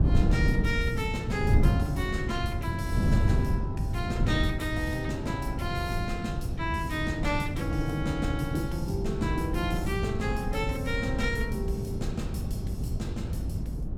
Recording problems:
wind on the microphone; below 150 Hz, SNR -2 dB

